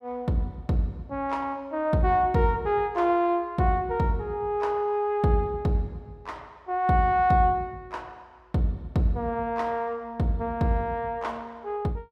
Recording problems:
none

